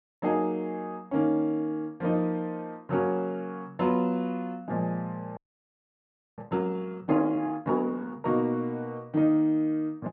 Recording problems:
frozen audio; at 5.5 s for 1 s

